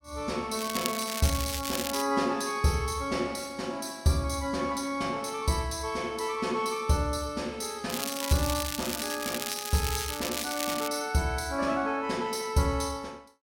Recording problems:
crackle; from 0.5 to 2 s and from 8 to 11 s; loose cable, SNR 4 dB

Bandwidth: 16.5 kHz